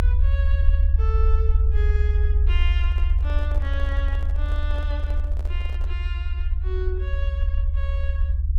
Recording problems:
rumble; below 72 Hz, SNR -13 dB
microphone handling noise; from 2.5 to 6 s; peak -4 dB vs average level

